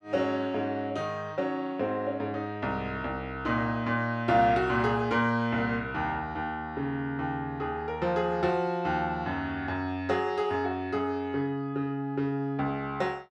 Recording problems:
none

